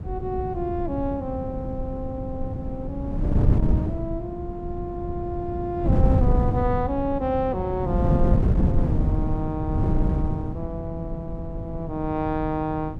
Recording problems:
wind on the microphone; below 160 Hz, SNR -3 dB

